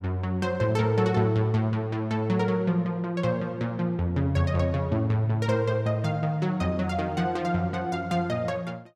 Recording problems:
none

